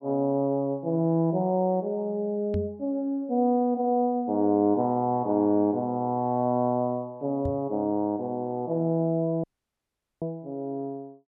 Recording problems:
knock on the microphone; at 2.5 s and at 7.5 s; peak -1 dB vs average level
audio cutting out; at 9.5 s for 1 s

